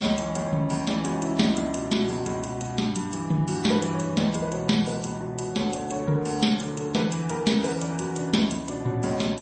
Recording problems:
lossy codec; MP3, then MP3, log-spectral distance 4 dB, nothing above 8.2 kHz

